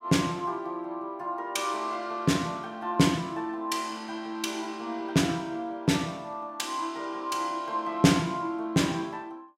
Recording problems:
none

